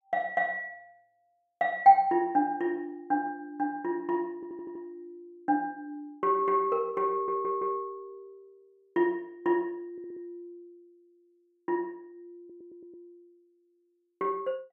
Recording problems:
stutter; 4 times, first at 4.5 s

